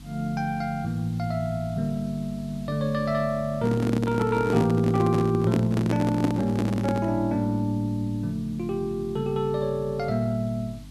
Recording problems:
hum; 50 Hz, harmonics up to 300 Hz, SNR 18 dB
background hiss; SNR 27 dB
handling noise; from 3.5 to 7 s; peak +4 dB vs average level

